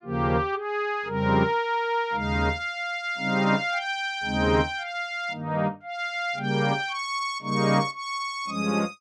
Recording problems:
none

